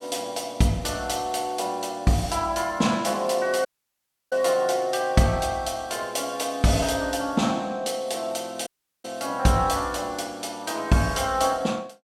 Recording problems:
audio cutting out; at 3.5 s for 0.5 s and at 8.5 s

